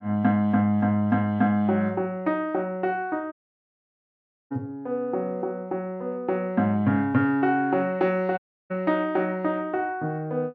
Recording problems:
audio cutting out; at 3.5 s for 1 s and at 8.5 s

